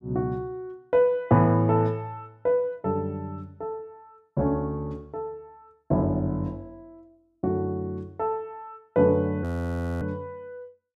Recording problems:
audio freezing; at 9.5 s for 0.5 s

